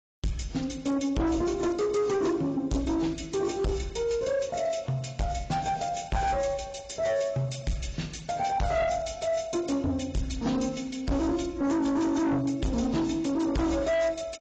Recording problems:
lossy compression; AAC, log-spectral distance 4 dB, nothing above 7.3 kHz
distortion; soft clipping, signal-to-distortion ratio 8 dB

